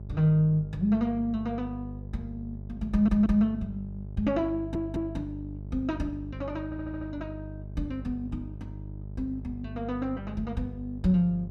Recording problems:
hum; 50 Hz, harmonics up to 600 Hz, SNR 11 dB
audio stuttering; at 3 s, at 4.5 s and at 6.5 s

